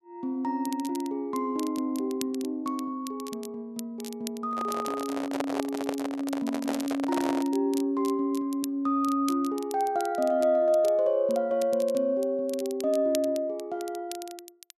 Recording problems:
crackle; vinyl, SNR 17 dB
microphone handling noise; from 4.5 to 7.5 s; peak +1 dB vs average level

